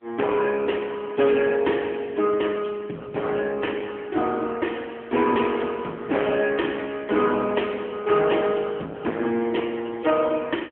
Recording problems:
telephone audio; 170 Hz to 3.3 kHz, AMR-NB
distorted audio; hard clipping, signal-to-distortion ratio 11 dB

